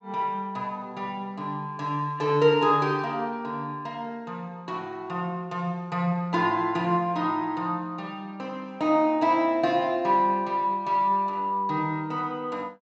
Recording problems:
low-pass filter; nothing above 8 kHz

